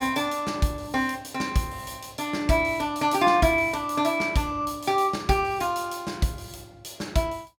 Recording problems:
none

